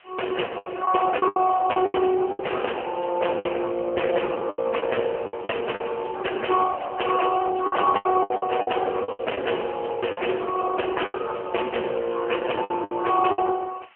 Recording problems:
phone line; 280 Hz to 3.1 kHz, AMR-NB
background hiss; SNR 27 dB
packet loss; 11% of the sound replaced, filled with the last packet

